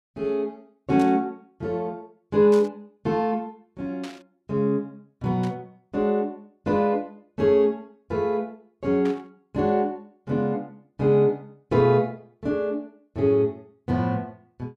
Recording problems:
burst of static; 5 times, first at 1 s; peak -11 dB vs average level

